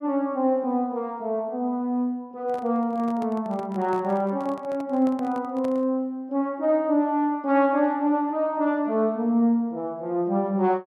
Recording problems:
microphone handling noise; from 2.5 to 6 s; peak -11 dB vs average level

